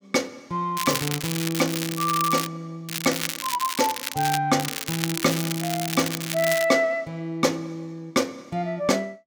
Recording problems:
crackling; from 1 to 2.5 s, from 3 to 4.5 s and from 4.5 to 6.5 s; loose cable, SNR 4 dB

